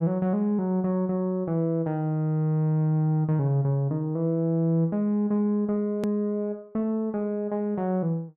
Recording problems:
edit click; at 6 s

